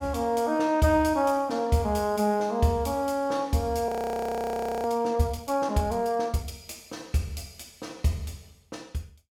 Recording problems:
audio freezing; at 4 s for 1 s

